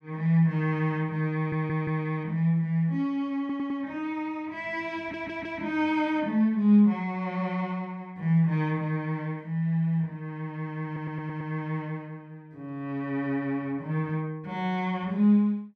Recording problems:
audio stuttering; 4 times, first at 1.5 s

